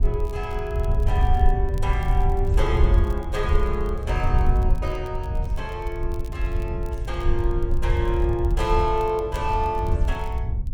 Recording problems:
wind noise; below 74 Hz, SNR -2 dB
crackling; vinyl, SNR 26 dB

